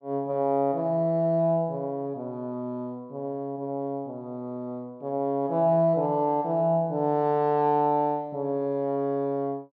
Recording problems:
none

